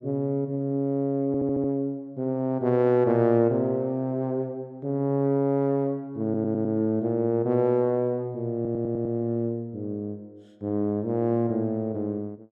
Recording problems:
audio stuttering; at 1.5 s, at 6 s and at 8.5 s

